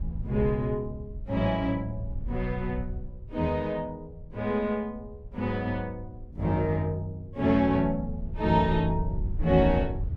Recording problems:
wind on the microphone; below 80 Hz, SNR 10 dB

